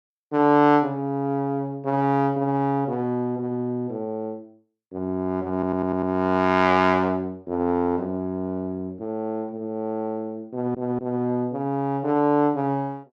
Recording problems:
stutter; at 5.5 s and at 11 s

